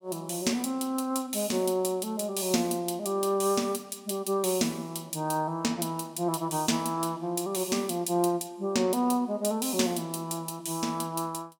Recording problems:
none

